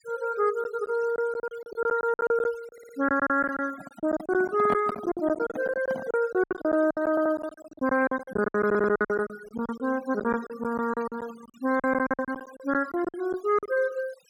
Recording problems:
denoising artefacts; signal-to-artefact ratio 21 dB
lost packets; 17% of the sound replaced, filled with silence
audio stuttering; at 2.5 s, at 7 s and at 8.5 s
handling noise; from 3.5 to 6 s; peak 0 dB vs average level

